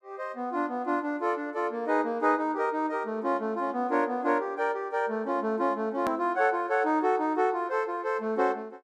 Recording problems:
click at an edit; at 6 s

